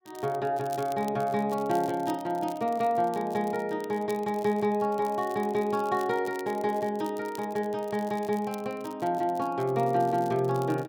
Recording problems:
crackle; vinyl, SNR 22 dB

